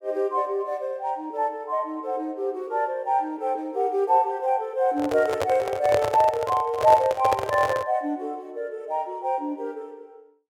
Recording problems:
microphone handling noise; from 5 to 8 s; peak +4 dB vs average level

